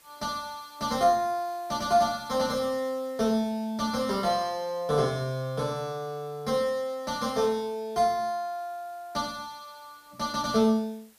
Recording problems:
hiss; slope -1 dB per octave, SNR 28 dB

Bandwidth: 15 kHz